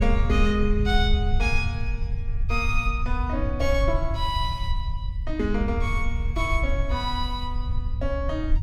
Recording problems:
rumble; below 76 Hz, SNR 0 dB

